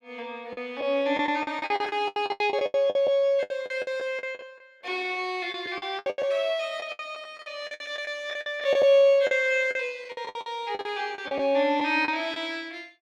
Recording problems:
lost packets; 17% of the sound replaced, filled with the last packet

